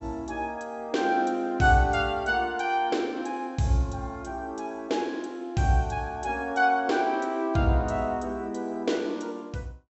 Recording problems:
low-pass filter; nothing above 7.7 kHz

